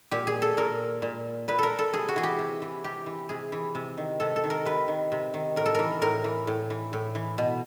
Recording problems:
background hiss; slope -1 dB per octave, SNR 27 dB

